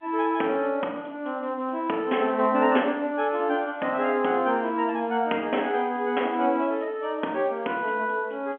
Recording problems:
phone line; 220 Hz to 3.5 kHz, G.711

